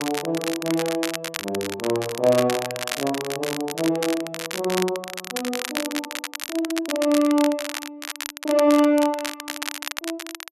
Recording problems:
crackling; vinyl, SNR 7 dB

